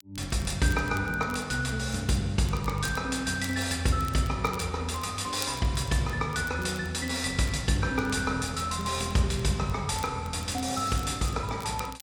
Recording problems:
crackle; vinyl, SNR 20 dB

